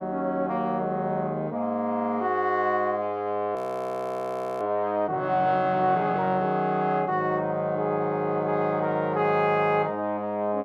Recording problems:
audio freezing; at 3.5 s for 1 s

